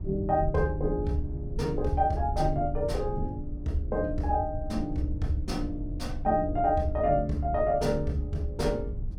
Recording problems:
low-frequency rumble; below 86 Hz, SNR 7 dB

